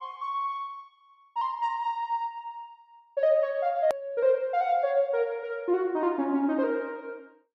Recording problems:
edit click; at 4 s

